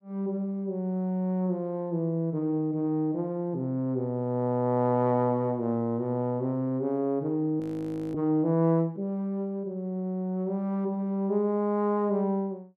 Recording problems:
frozen audio; at 7.5 s for 0.5 s

